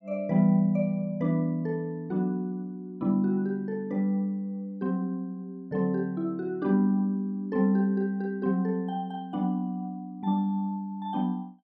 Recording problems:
none

